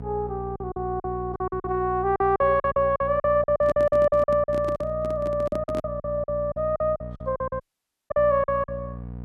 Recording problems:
electrical hum; 60 Hz, harmonics up to 780 Hz, SNR 13 dB
packet loss; 16% of the sound replaced, filled with silence
microphone handling noise; from 3.5 to 6 s; peak -6 dB vs average level
audio cutting out; at 7.5 s for 0.5 s

